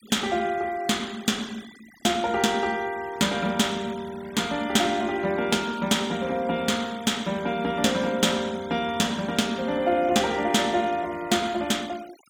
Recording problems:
denoising artefacts; signal-to-artefact ratio 20 dB

